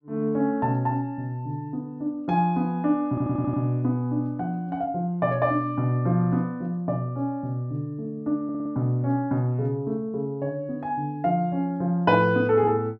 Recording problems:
audio stuttering; at 3 s and at 8.5 s

